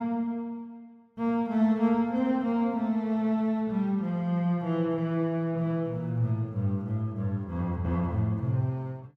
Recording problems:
none

